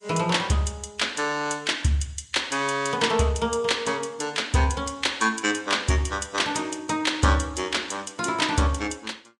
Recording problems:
lossy codec; Vorbis, log-spectral distance 3 dB

